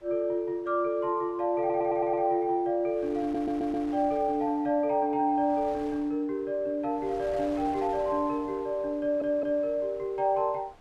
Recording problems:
wind on the microphone; below 1.5 kHz, SNR 23 dB
stutter; at 1.5 s, at 3 s and at 9 s

